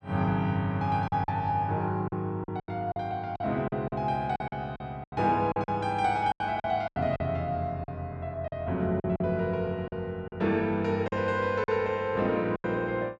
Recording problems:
lost packets; 10% of the sound replaced, filled with silence

